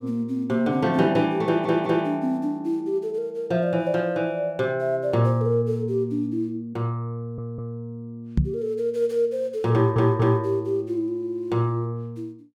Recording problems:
stutter; at 1.5 s, at 7 s and at 9.5 s
microphone bump; at 8.5 s; peak +6 dB vs average level

